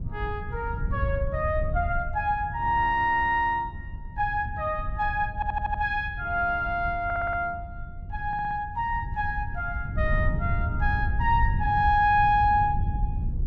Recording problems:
wind on the microphone; below 100 Hz, SNR 6 dB
stutter; at 5.5 s, at 7 s and at 8.5 s

